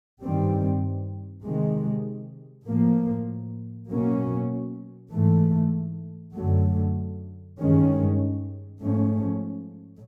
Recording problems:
none

